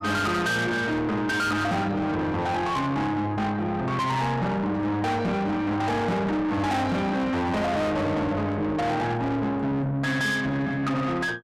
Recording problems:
distortion; soft clipping, signal-to-distortion ratio 7 dB

